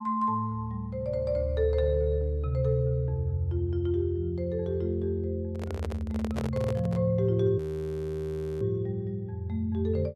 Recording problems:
handling noise; from 5.5 to 7 s; peak -2 dB vs average level
audio freezing; at 7.5 s for 1 s

